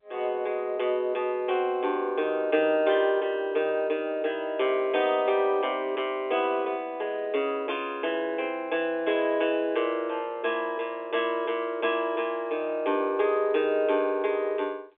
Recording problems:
phone line; 280 Hz to 3.5 kHz, G.711

